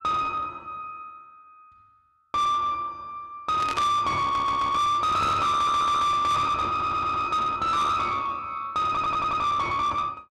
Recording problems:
distortion; soft clipping, signal-to-distortion ratio 8 dB
static burst; at 3.5 s; peak -4 dB vs average level
stutter; 4 times, first at 4 s

